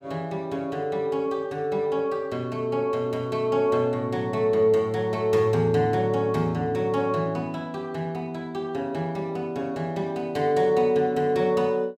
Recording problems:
none

